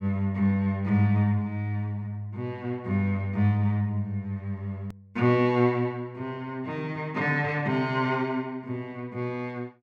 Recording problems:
hard cut with a click; at 5 s

